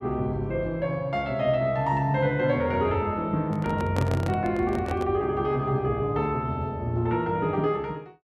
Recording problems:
handling noise; from 3.5 to 5 s; peak -2 dB vs average level

